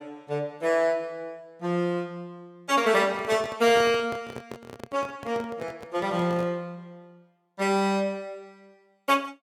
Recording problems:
microphone handling noise; from 3 to 6.5 s; peak -7 dB vs average level

